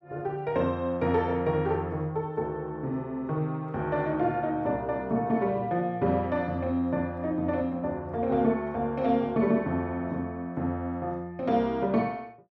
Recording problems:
none

